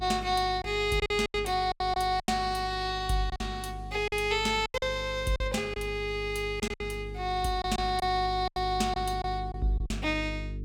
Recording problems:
electrical hum; 50 Hz, harmonics up to 450 Hz, SNR 11 dB
lost packets; 9% of the sound replaced, filled with silence

